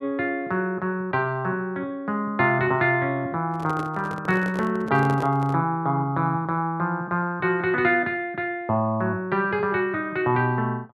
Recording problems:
microphone handling noise; from 3.5 to 5.5 s; peak -5 dB vs average level

